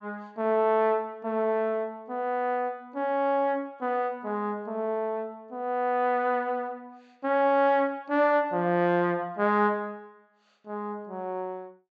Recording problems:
treble cut off; nothing above 8 kHz

